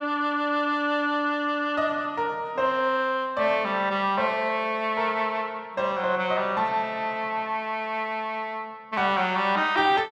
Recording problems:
none

